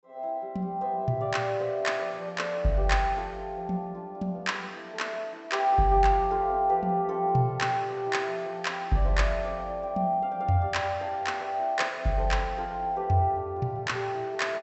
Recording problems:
low-pass filter; nothing above 7.9 kHz

